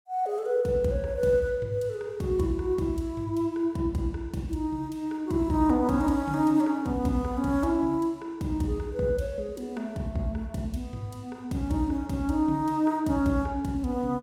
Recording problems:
none

